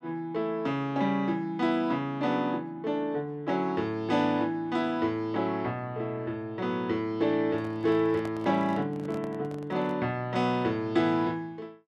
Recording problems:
microphone handling noise; from 7.5 to 10 s; peak -8 dB vs average level

